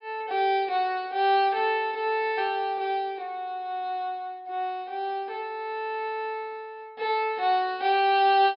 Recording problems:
treble missing; nothing above 5.5 kHz

